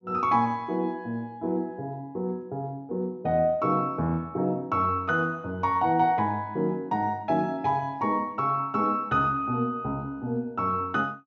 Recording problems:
treble missing; nothing above 8 kHz

